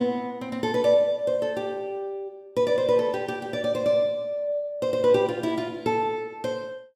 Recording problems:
none

